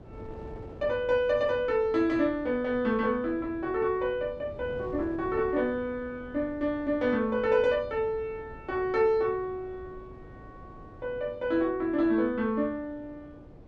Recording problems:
wind noise; below 410 Hz, SNR 19 dB

